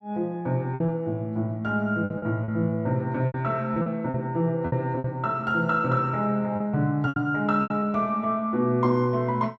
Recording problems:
packet loss; 8% of the sound replaced, filled with repeated pitch periods

